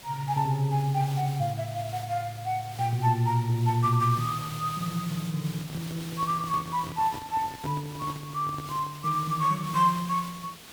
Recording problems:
hiss; slope -1 dB per octave, SNR 15 dB
handling noise; from 5.5 to 9 s; peak -6 dB vs average level

